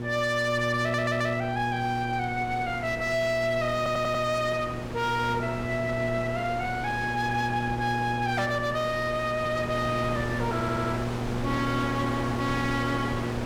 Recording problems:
distorted audio; hard clipping, signal-to-distortion ratio 10 dB
mains hum; 60 Hz, harmonics up to 960 Hz, SNR 6 dB
wind on the microphone; below 1.2 kHz, SNR 9 dB
stutter; at 1 s, at 4 s and at 11 s

